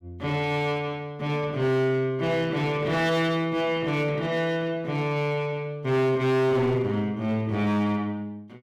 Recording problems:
distortion; hard clipping, signal-to-distortion ratio 11 dB

